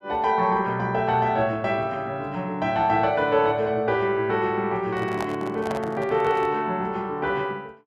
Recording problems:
handling noise; from 5 to 6.5 s; peak -3 dB vs average level

